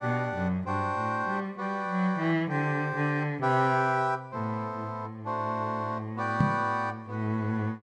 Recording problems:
microphone bump; at 6.5 s; peak +8 dB vs average level

